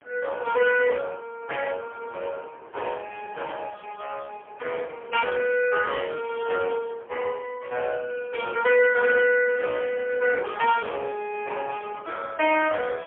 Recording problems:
phone line; 370 Hz to 3.1 kHz, AMR-NB, then MP3
wind on the microphone; below 1.1 kHz, SNR 22 dB

